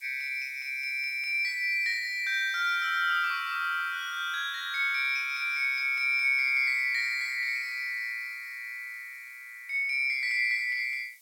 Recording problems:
background hiss; slope +5 dB per octave, SNR 27 dB

